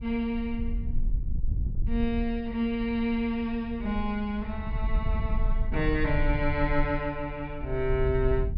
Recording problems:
treble cut off; nothing above 5.5 kHz
wind noise; below 58 Hz, SNR 4 dB

